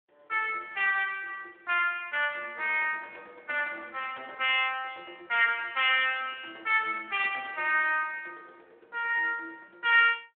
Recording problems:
telephone audio; 370 Hz to 3.5 kHz, Speex

